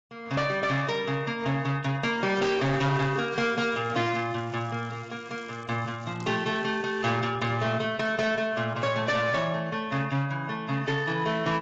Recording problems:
lossy compression; AAC, log-spectral distance 4 dB, nothing above 7.3 kHz
distorted audio; hard clipping, signal-to-distortion ratio 11 dB
crackling; from 2.5 to 7 s; loose cable, SNR 28 dB

